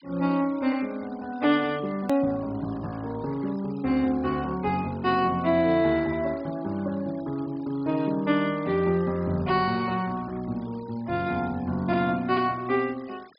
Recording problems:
low-pass filter; nothing above 5.5 kHz
noise reduction artefacts; signal-to-artefact ratio 24 dB
click at an edit; at 2 s

